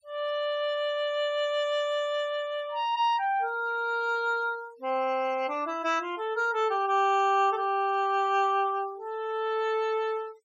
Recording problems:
noise reduction artefacts; signal-to-artefact ratio 26 dB

